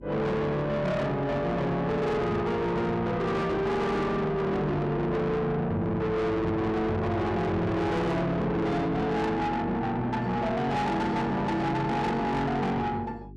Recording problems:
distorted audio; soft clipping, signal-to-distortion ratio 7 dB
hum; 50 Hz, harmonics up to 400 Hz, SNR 19 dB

